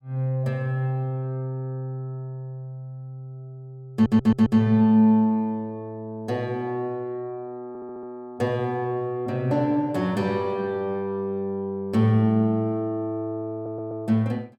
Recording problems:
stutter; at 4 s, at 7.5 s and at 14 s

